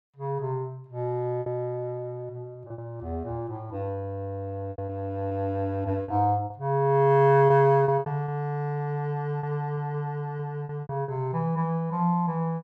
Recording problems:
lost packets; 7% of the sound replaced, filled with repeated pitch periods

